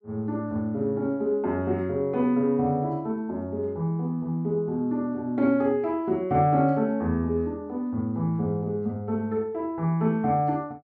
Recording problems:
none

